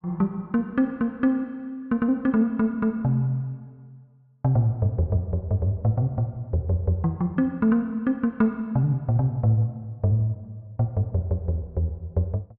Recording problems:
none

